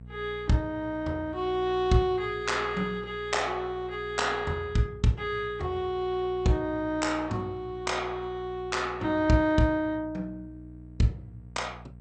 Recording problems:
lossy compression; MP2, log-spectral distance 2 dB, nothing above 8.5 kHz
hum; 60 Hz, harmonics up to 480 Hz, SNR 18 dB

